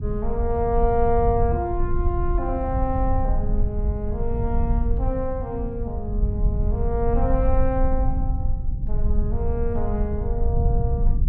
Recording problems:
rumble; below 72 Hz, SNR -1 dB

